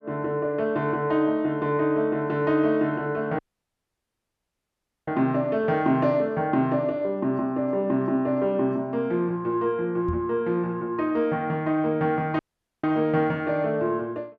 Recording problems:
dropout; at 3.5 s for 1.5 s and at 12 s
knock on the microphone; at 10 s; peak -3 dB vs average level

